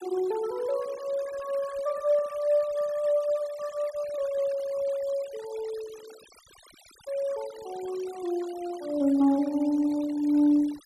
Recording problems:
noise reduction artefacts; signal-to-artefact ratio 21 dB

